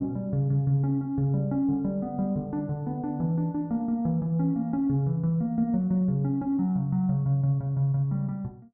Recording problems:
none

